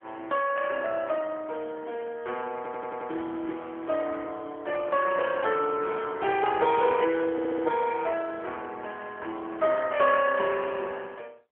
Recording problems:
telephone audio; 280 Hz to 3.3 kHz, AMR-NB
audio stuttering; at 2.5 s and at 7.5 s

